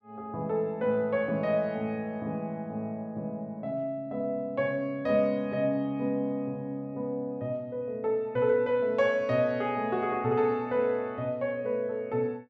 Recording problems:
none

